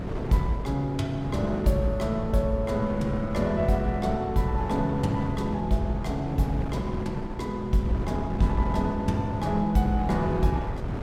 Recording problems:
wind on the microphone; below 350 Hz, SNR 7 dB

